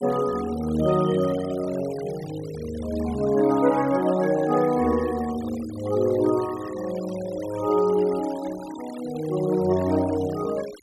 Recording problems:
noise reduction artefacts; signal-to-artefact ratio 18 dB

